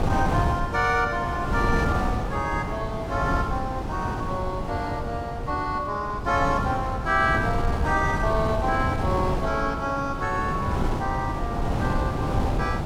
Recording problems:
wind noise; below 420 Hz, SNR 2 dB

